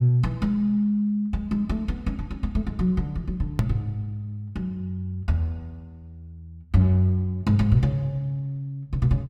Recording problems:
click at an edit; at 3.5 s

